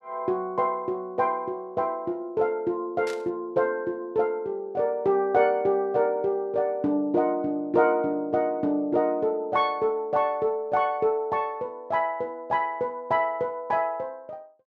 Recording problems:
burst of static; at 3 s; peak -10 dB vs average level

